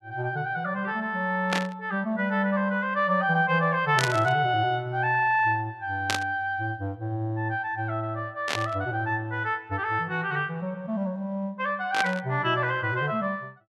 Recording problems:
burst of static; 5 times, first at 1.5 s; peak +4 dB vs average level

